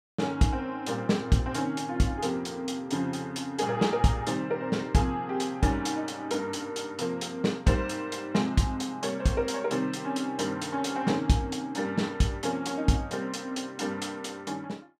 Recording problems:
none

